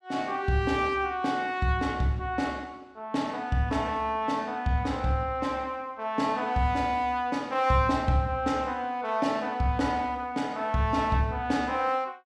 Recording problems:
none

